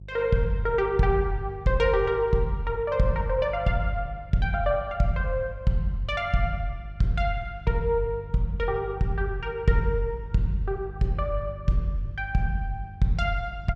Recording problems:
hum; 50 Hz, harmonics up to 350 Hz, SNR 16 dB

